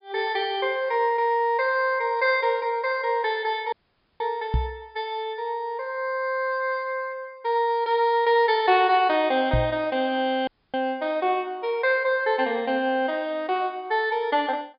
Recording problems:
low-pass filter; nothing above 5.1 kHz
audio cutting out; at 3.5 s and at 10 s
knock on the microphone; at 4.5 s and at 9.5 s; peak +3 dB vs average level

